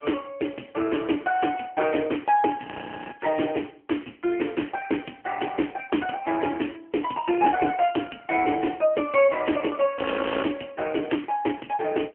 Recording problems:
phone line; 240 Hz to 3.2 kHz, AMR-NB
audio freezing; at 2.5 s and at 10 s

